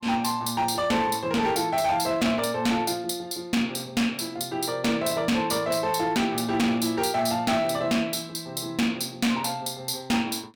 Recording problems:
distorted audio; hard clipping, signal-to-distortion ratio 10 dB

